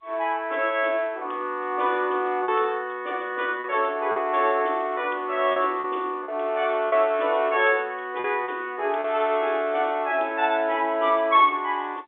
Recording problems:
phone line; 260 Hz to 3.6 kHz, G.711
packet loss; 3% of the sound replaced, filled with repeated pitch periods

